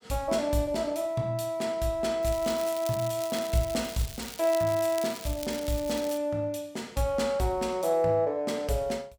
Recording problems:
crackling; from 2 to 6 s; loose cable, SNR 13 dB

